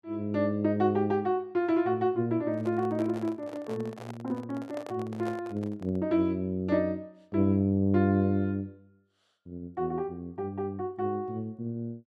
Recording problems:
handling noise; from 2.5 to 6 s; peak -7 dB vs average level

